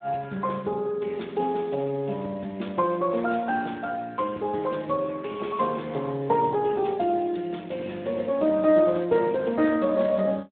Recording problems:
phone line; 170 Hz to 3.6 kHz, Speex

